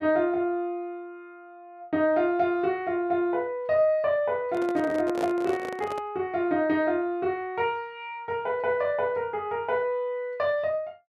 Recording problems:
microphone handling noise; from 4.5 to 6 s; peak -3 dB vs average level

